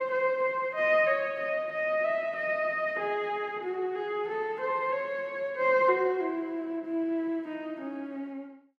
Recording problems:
none

